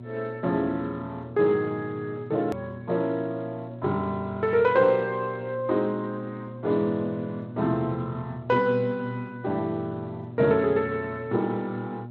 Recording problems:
lossy compression; Speex, log-spectral distance 2 dB, nothing above 13.1 kHz
mains hum; 60 Hz, harmonics up to 720 Hz, SNR 13 dB
click at an edit; at 2.5 s

